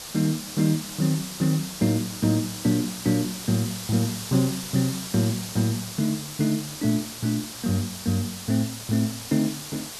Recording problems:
background hiss; SNR 9 dB

